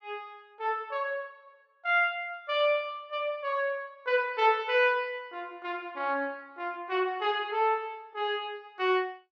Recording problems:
none

